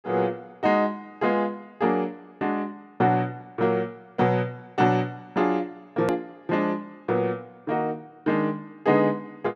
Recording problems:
hard cut with a click; at 6 s

